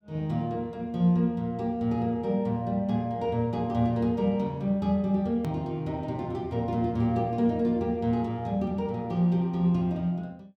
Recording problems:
hard cut with a click; at 5.5 s

